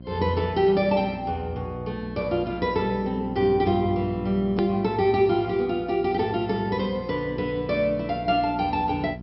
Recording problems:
treble missing; nothing above 5.4 kHz
electrical hum; 60 Hz, harmonics up to 720 Hz, SNR 13 dB
click at an edit; at 4.5 s

